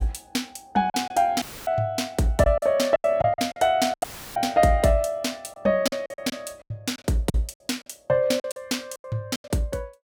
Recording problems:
packet loss; 10% of the sound replaced, filled with silence
dropout; at 1.5 s and at 4 s; filled with static

